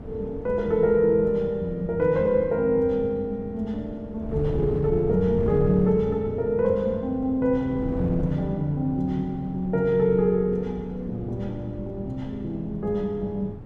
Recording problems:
wind noise; below 240 Hz, SNR 12 dB

